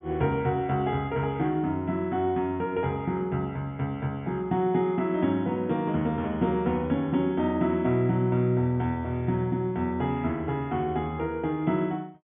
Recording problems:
low-pass filter; nothing above 3.5 kHz

